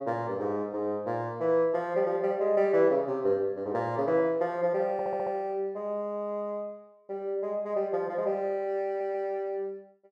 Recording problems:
audio stuttering; at 5 s and at 9 s

